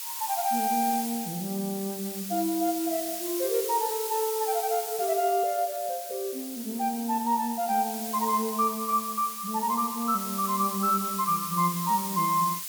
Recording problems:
background hiss; slope +4 dB per octave, SNR 6 dB

